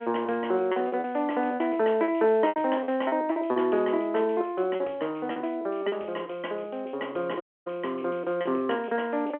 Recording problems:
phone line; 280 Hz to 3.3 kHz, G.711
packet loss; 7% of the sound replaced, filled with repeated pitch periods
dropout; at 7.5 s

